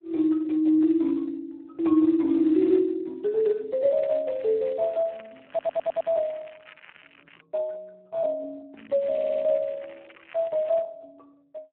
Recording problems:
phone line; 260 Hz to 2.1 kHz, Speex
crackling; at 2.5 s, from 4 to 7.5 s and from 9 to 11 s; loose cable, SNR 25 dB
stutter; at 5.5 s and at 9 s

